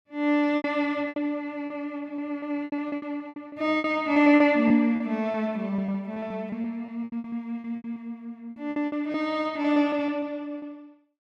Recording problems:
packet loss; 15% of the sound replaced, filled with repeated pitch periods

